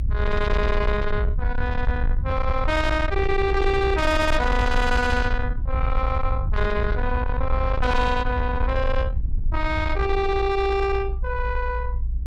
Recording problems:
distorted audio; soft clipping, signal-to-distortion ratio 11 dB
low-frequency rumble; below 70 Hz, SNR 3 dB

